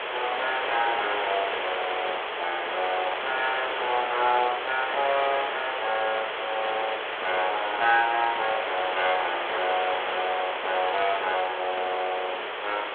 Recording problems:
telephone audio; 320 Hz to 3.6 kHz, G.726
hiss; SNR 2 dB
crackle; at 6 s and at 6.5 s; loose cable, SNR 20 dB

